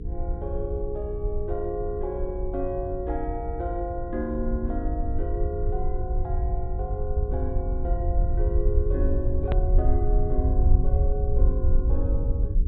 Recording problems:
treble cut off; nothing above 4 kHz
hum; 60 Hz, harmonics up to 480 Hz, SNR 10 dB
rumble; below 70 Hz, SNR -4 dB
edit click; at 9.5 s

